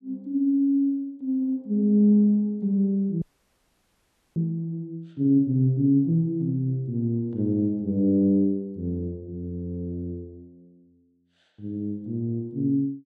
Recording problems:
audio freezing; at 3 s for 1 s

